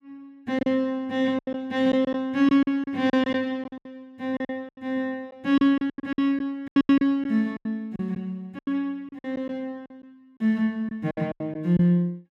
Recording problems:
lost packets; 14% of the sound replaced, filled with silence

